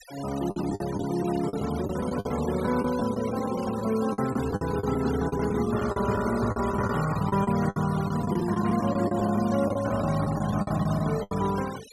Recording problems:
denoising artefacts; signal-to-artefact ratio 14 dB
lost packets; 12% of the sound replaced, filled with the last packet

